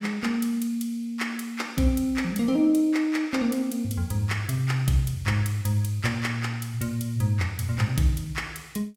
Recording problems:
none

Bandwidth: 17 kHz